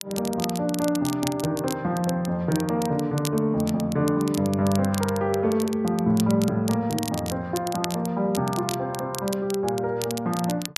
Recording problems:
crackle; vinyl, SNR 12 dB

